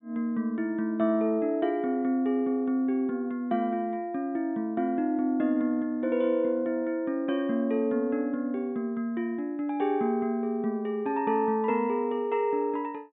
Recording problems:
low-pass filter; nothing above 3.7 kHz

